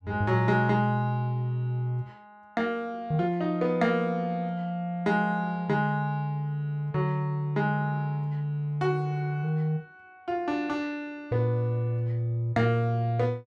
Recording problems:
none

